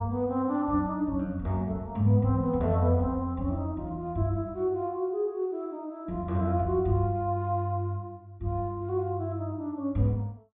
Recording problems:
treble cut off; nothing above 3.8 kHz

